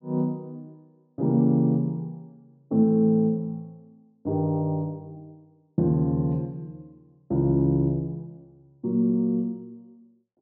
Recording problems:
treble missing; nothing above 7.5 kHz

